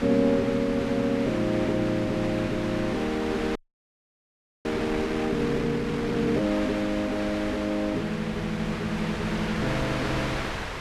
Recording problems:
wind on the microphone; below 2.4 kHz, SNR 6 dB
frozen audio; at 3.5 s for 1 s

